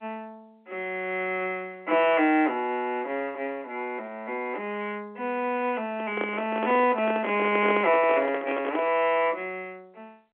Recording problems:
phone line; 260 Hz to 3.5 kHz, G.711
handling noise; from 6 to 9 s; peak 0 dB vs average level

